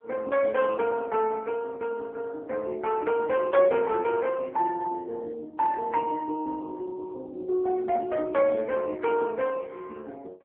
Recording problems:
telephone audio; 280 Hz to 3.4 kHz, AMR-NB

